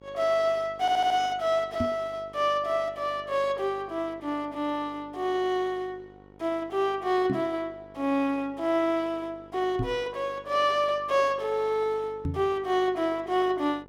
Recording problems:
hum; 50 Hz, harmonics up to 1.9 kHz, SNR 24 dB
stutter; at 1 s
microphone thump; 4 times, first at 2 s; peak +2 dB vs average level

